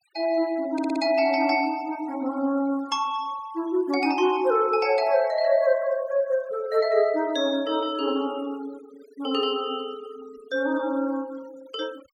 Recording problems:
noise reduction artefacts; signal-to-artefact ratio 24 dB
audio stuttering; at 0.5 s

